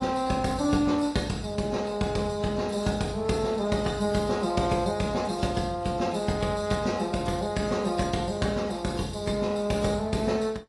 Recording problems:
codec artefacts; AAC, log-spectral distance 3 dB, nothing above 11 kHz

